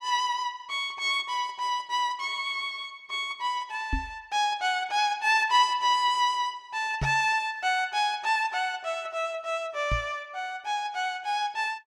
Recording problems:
microphone thump; at 4 s, at 7 s and at 10 s; peak +1 dB vs average level

